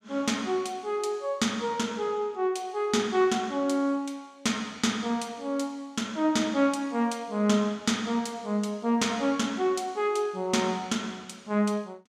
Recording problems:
none

